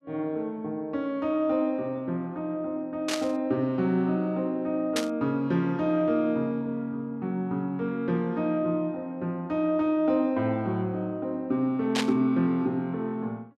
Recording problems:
static burst; at 3 s, at 5 s and at 12 s; peak +4 dB vs average level

